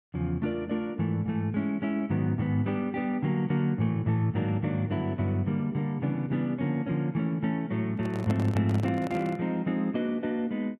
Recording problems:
handling noise; from 8 to 9.5 s; peak -5 dB vs average level

